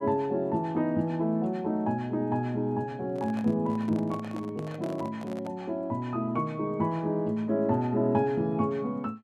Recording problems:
microphone handling noise; from 3 to 5.5 s; peak -9 dB vs average level

